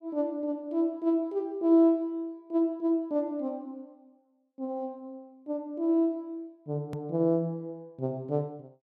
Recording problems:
edit click; at 7 s

